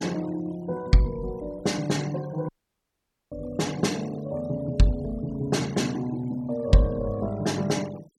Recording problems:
noise reduction artefacts; signal-to-artefact ratio 20 dB
audio cutting out; at 2.5 s for 1 s

